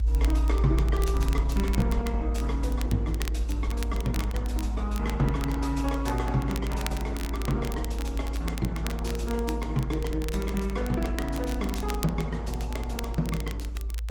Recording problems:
lossy codec; Opus, log-spectral distance 2 dB, nothing above 18.3 kHz
low-frequency rumble; below 58 Hz, strongest tone 56 Hz, SNR -3 dB
crackle; vinyl, SNR 11 dB

